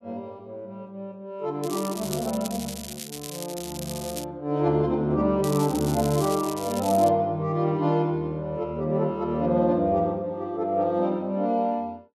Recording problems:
crackling; from 1.5 to 4 s and from 5.5 to 7 s; loose cable, SNR 12 dB

